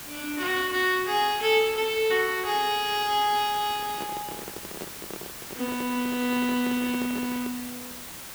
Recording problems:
hiss; slope -1 dB per octave, SNR 11 dB
microphone handling noise; from 3.5 to 7.5 s; peak -8 dB vs average level

